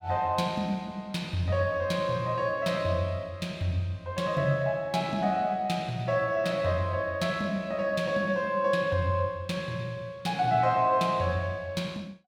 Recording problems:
none

